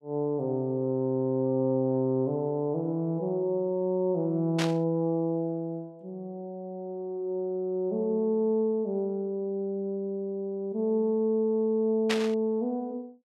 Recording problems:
burst of static; at 4.5 s and at 12 s; peak +3 dB vs average level

